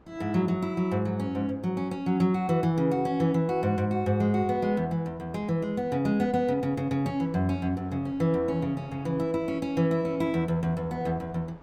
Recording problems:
wind noise; below 760 Hz, SNR 24 dB

